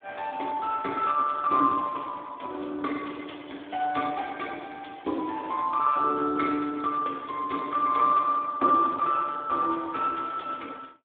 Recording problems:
telephone audio; 240 Hz to 2.1 kHz, Speex

